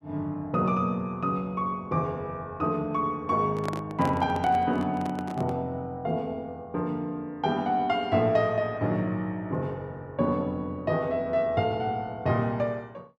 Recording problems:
microphone handling noise; from 3.5 to 5.5 s; peak -2 dB vs average level

